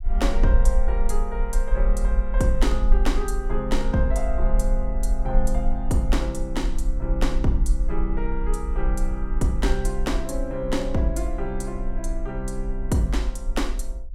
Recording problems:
rumble; below 42 Hz, SNR 0 dB

